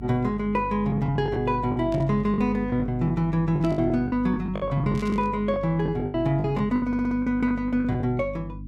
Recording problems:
hum; 50 Hz, harmonics up to 300 Hz, SNR 12 dB
lost packets; 14% of the sound replaced, filled with the last packet
burst of static; at 2 s, at 3.5 s and at 5 s; peak -14 dB vs average level
stutter; at 7 s

